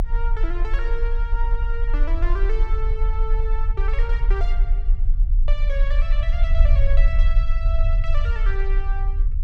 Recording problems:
low-frequency rumble; below 40 Hz, SNR -10 dB

